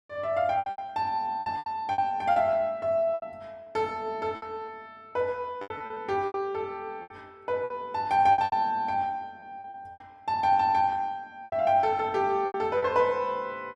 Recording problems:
packet loss; 11% of the sound replaced, filled with repeated pitch periods

